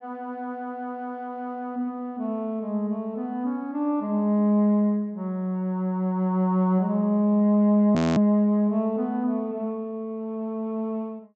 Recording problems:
treble cut off; nothing above 8 kHz
frozen audio; at 8 s

